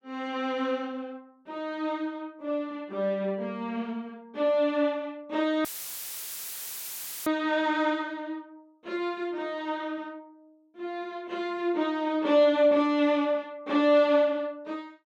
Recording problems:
audio cutting out; at 5.5 s for 1.5 s; filled with static

